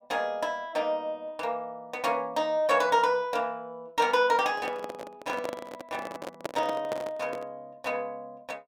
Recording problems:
handling noise; from 4.5 to 7.5 s; peak 0 dB vs average level

